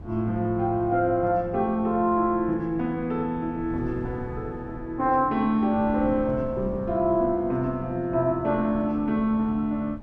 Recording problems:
wind noise; below 210 Hz, SNR 16 dB

